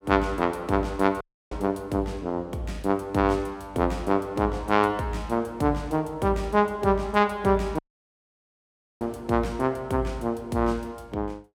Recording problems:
dropout; at 1 s and at 8 s for 1 s

